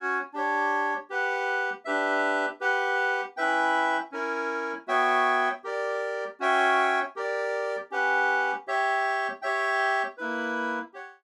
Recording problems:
none

